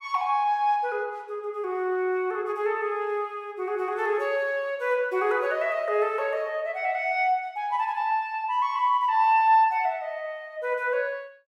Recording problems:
none

